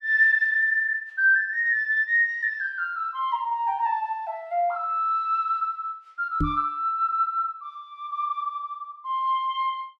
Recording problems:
microphone bump; at 6.5 s; peak +2 dB vs average level

